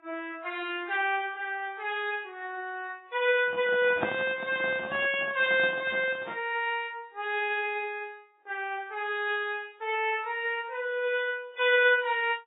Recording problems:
lossy compression; MP3, then AAC, log-spectral distance 3 dB, nothing above 3.2 kHz
handling noise; from 3.5 to 6.5 s; peak +2 dB vs average level

